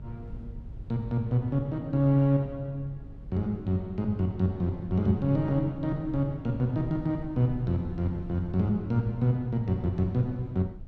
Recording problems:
electrical hum; 50 Hz, harmonics up to 500 Hz, SNR 22 dB
wind on the microphone; below 100 Hz, SNR 17 dB

